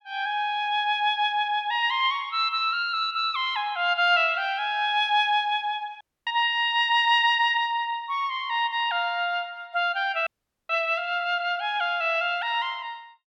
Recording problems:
audio cutting out; at 6 s and at 10 s

